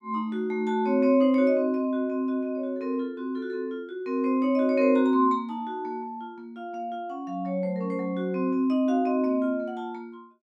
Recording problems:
none

